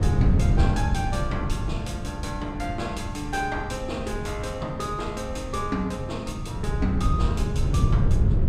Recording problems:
wind noise; below 130 Hz, SNR -3 dB

